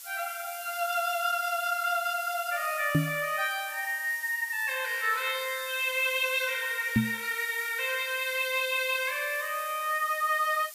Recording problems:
hiss; slope +3 dB per octave, SNR 12 dB
knock on the microphone; at 3 s and at 7 s; peak +7 dB vs average level

